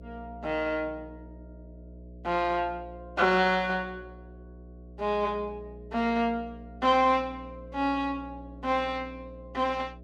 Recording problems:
electrical hum; 60 Hz, harmonics up to 660 Hz, SNR 18 dB

